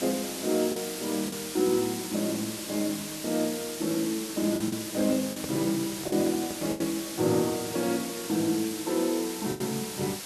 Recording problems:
hiss; slope 0 dB per octave, SNR 6 dB
lost packets; 4% of the sound replaced, filled with the last packet
microphone handling noise; from 5 to 7 s; peak -4 dB vs average level

